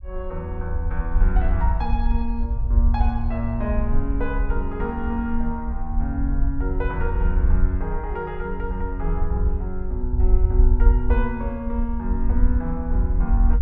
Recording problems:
low-frequency rumble; below 62 Hz, SNR -4 dB

